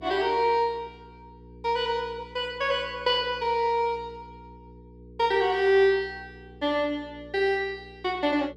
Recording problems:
hum; 60 Hz, harmonics up to 480 Hz, SNR 23 dB

